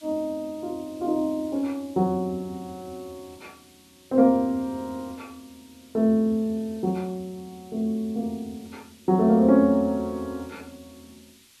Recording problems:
hiss; SNR 28 dB

